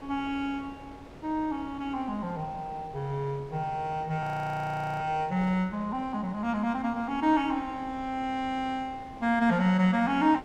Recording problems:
wind noise; below 710 Hz, SNR 19 dB
frozen audio; at 4 s for 1 s

